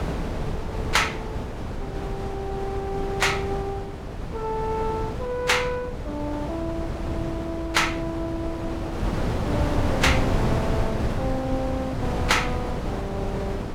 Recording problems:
wind on the microphone; below 470 Hz, SNR 2 dB

